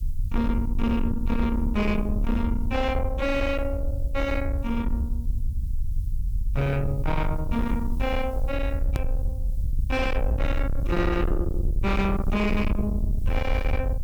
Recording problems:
distortion; soft clipping, signal-to-distortion ratio 8 dB
background hiss; SNR 30 dB
rumble; below 78 Hz, SNR 2 dB
edit click; at 9 s

